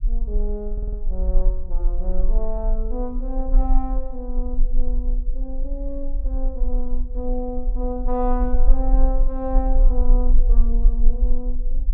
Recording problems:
rumble; below 36 Hz, strongest tone 20 Hz, SNR -7 dB
stutter; at 0.5 s

